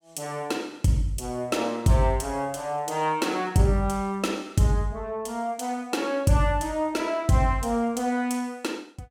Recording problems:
none

